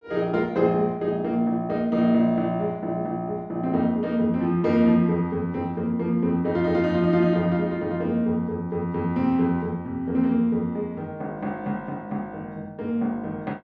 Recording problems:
none

